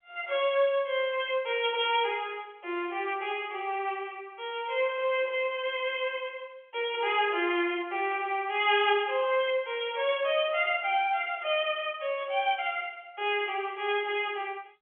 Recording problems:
phone line; 300 Hz to 3.4 kHz, G.711
crackle; at 12 s; loose cable, SNR 27 dB

